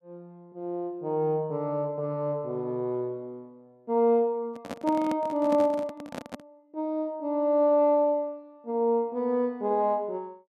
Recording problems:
handling noise; from 4.5 to 6.5 s; peak -3 dB vs average level

